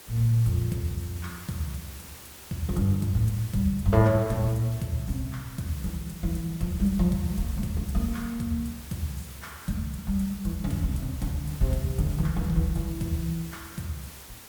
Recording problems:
hiss; slope -2 dB per octave, SNR 16 dB

